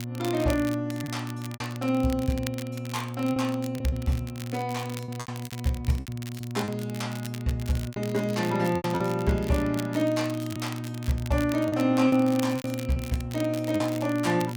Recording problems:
hum; 60 Hz, harmonics up to 720 Hz, SNR 7 dB
crackle; vinyl, SNR 15 dB
packet loss; 8% of the sound replaced, filled with repeated pitch periods

